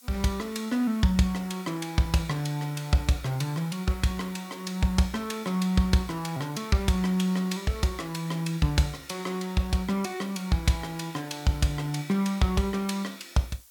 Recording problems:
hiss; SNR 23 dB

